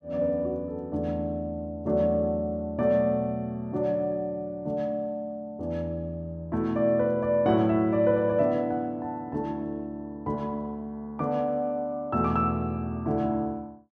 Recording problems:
none

